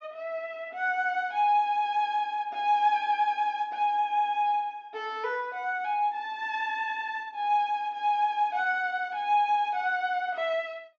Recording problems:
treble cut off; nothing above 8 kHz

